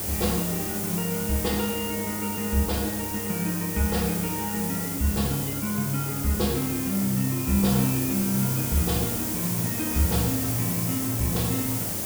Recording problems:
electrical hum; 50 Hz, harmonics up to 700 Hz, SNR 13 dB
background hiss; SNR 1 dB

